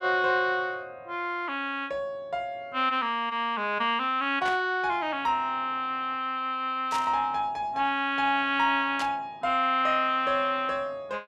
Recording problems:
burst of static; at 4.5 s, at 7 s and at 9 s; peak -4 dB vs average level

